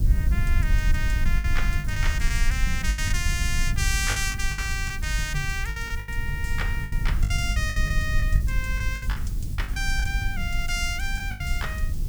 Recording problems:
hiss; SNR 16 dB
low-frequency rumble; below 68 Hz, SNR -1 dB
lost packets; 10% of the sound replaced, filled with the last packet

